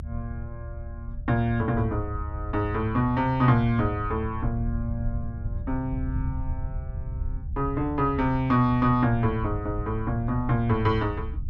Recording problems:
rumble; below 80 Hz, SNR 9 dB

